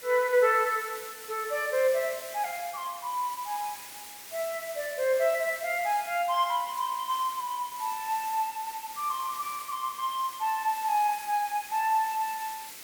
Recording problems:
background hiss; SNR 12 dB

